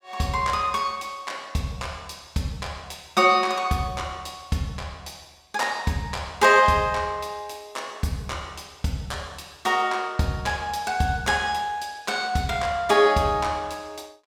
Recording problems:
none

